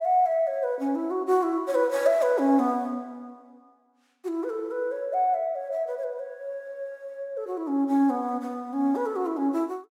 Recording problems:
none

